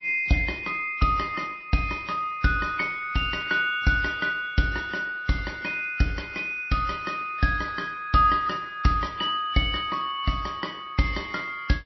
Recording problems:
codec artefacts; MP3, then MP3, log-spectral distance 3 dB, nothing above 5.7 kHz

